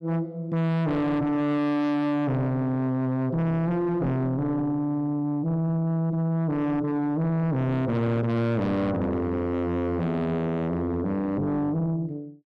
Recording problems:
distorted audio; soft clipping, signal-to-distortion ratio 6 dB

